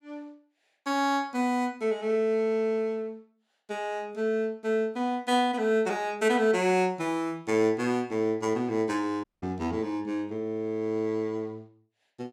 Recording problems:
audio cutting out; at 9 s

